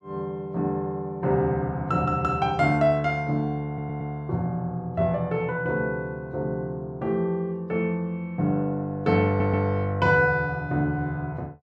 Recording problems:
audio stuttering; at 3.5 s and at 9.5 s

